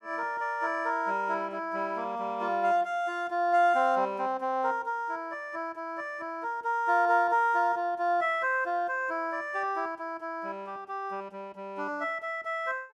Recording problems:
none

